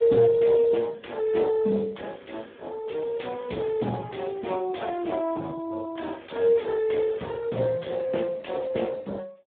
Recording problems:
phone line; 130 Hz to 3.7 kHz, Speex

